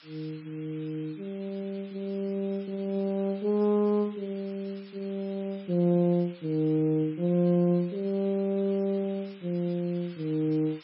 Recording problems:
codec artefacts; MP3, log-spectral distance 5 dB
hiss; SNR 23 dB

